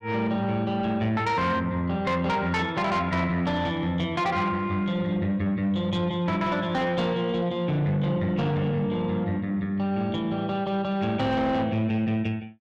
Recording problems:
distortion; soft clipping, signal-to-distortion ratio 11 dB

